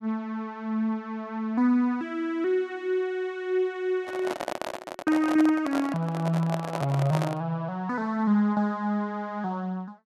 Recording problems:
handling noise; from 4 to 7.5 s; peak 0 dB vs average level

